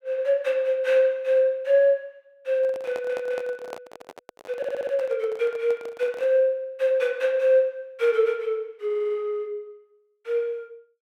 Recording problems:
handling noise; from 2.5 to 6.5 s; peak -8 dB vs average level
stutter; at 3 s, at 4.5 s and at 9 s

